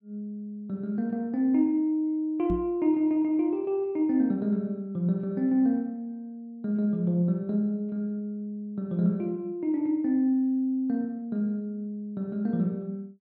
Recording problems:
knock on the microphone; at 2.5 s; peak 0 dB vs average level

